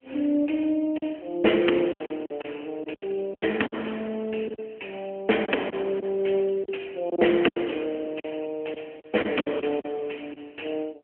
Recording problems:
phone line; 240 Hz to 3.2 kHz, AMR-NB
lost packets; 9% of the sound replaced, filled with silence

